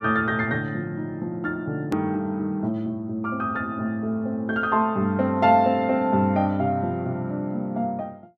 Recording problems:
click at an edit; at 2 s

